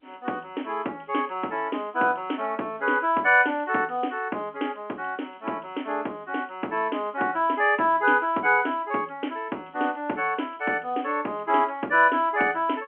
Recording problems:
telephone audio; 220 Hz to 3.3 kHz, G.711

